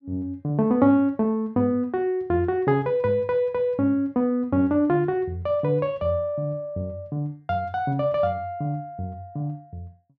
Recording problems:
none

